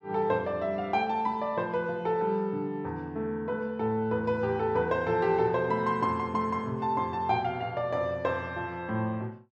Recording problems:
none

